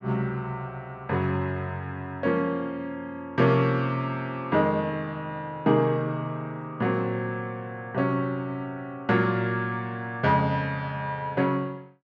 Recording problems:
none

